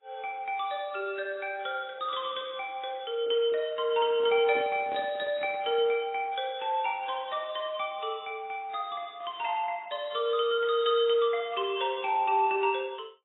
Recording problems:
lossy compression; AAC, log-spectral distance 2 dB, nothing above 3.5 kHz
handling noise; from 4 to 6 s; peak -10 dB vs average level

